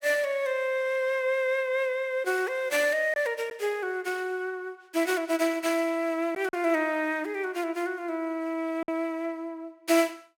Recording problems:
lost packets; 1.3% of the sound replaced, filled with silence

